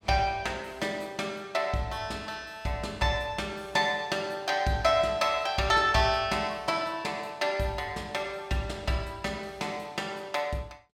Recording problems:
none

